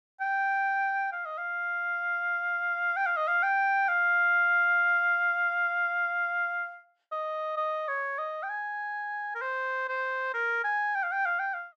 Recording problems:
none

